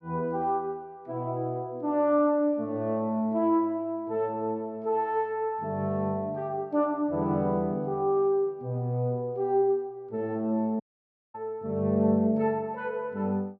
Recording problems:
dropout; at 11 s for 0.5 s

